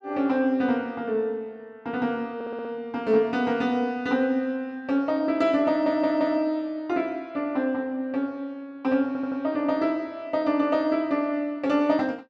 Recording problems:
audio stuttering; at 2.5 s, at 5.5 s and at 9 s

